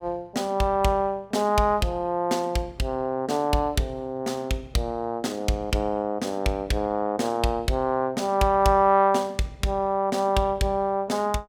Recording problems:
none

